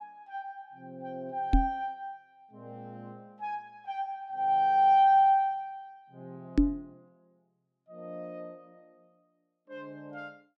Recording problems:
microphone bump; at 1.5 s and at 6.5 s; peak +8 dB vs average level

